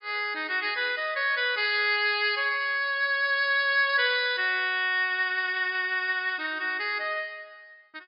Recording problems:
treble missing; nothing above 5.5 kHz

